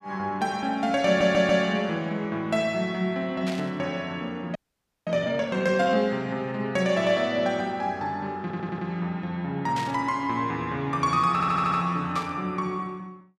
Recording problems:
stutter; at 1 s, at 8.5 s and at 11 s
static burst; at 3.5 s, at 10 s and at 12 s; peak -6 dB vs average level
frozen audio; at 4.5 s for 0.5 s

